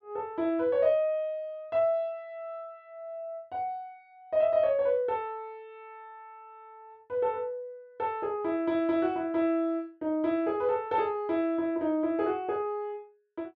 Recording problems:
none

